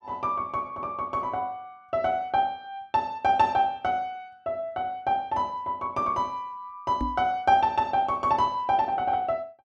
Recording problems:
microphone thump; at 7 s; peak -1 dB vs average level

